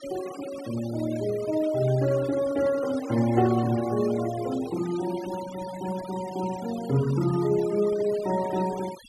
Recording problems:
noise reduction artefacts; signal-to-artefact ratio 16 dB

